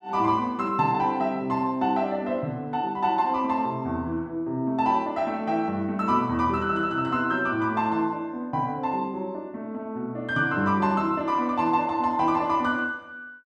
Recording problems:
none

